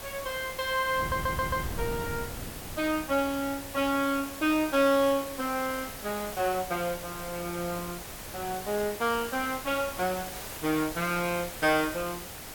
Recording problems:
hiss; slope -2 dB per octave, SNR 10 dB
wind on the microphone; below 280 Hz, SNR 15 dB
stutter; at 1 s

